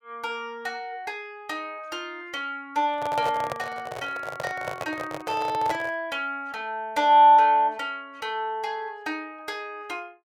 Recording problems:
microphone handling noise; from 3 to 6 s; peak -1 dB vs average level

